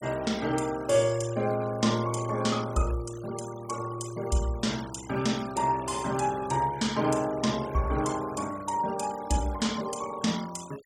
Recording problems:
denoising artefacts; signal-to-artefact ratio 17 dB

